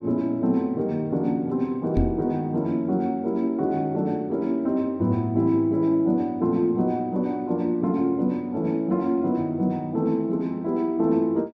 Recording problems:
knock on the microphone; at 2 s; peak +4 dB vs average level

